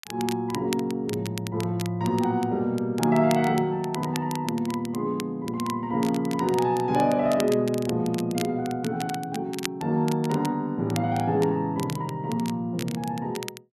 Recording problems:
crackling; vinyl, SNR 14 dB

